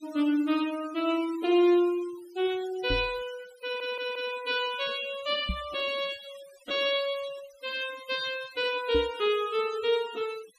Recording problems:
noise reduction artefacts; signal-to-artefact ratio 18 dB
microphone thump; at 3 s, at 5.5 s and at 9 s; peak 0 dB vs average level
stutter; at 3.5 s

